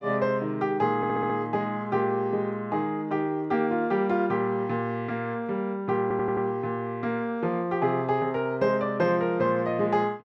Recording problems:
stutter; at 1 s and at 6 s

